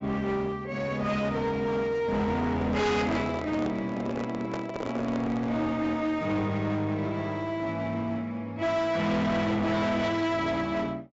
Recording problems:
treble cut off; nothing above 8 kHz
distorted audio; hard clipping, uneven, signal-to-distortion ratio 7 dB
microphone handling noise; from 2.5 to 5.5 s; peak -3 dB vs average level

